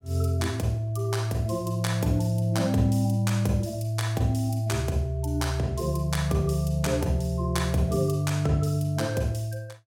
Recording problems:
none

